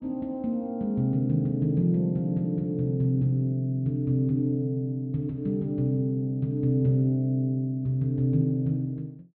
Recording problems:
treble cut off; nothing above 4.5 kHz

